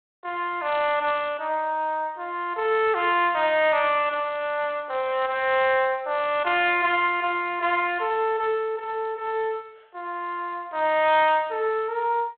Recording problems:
phone line; 370 Hz to 3.8 kHz, G.726

